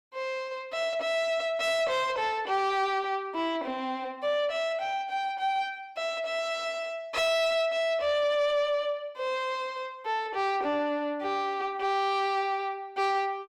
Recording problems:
distortion; soft clipping, signal-to-distortion ratio 12 dB

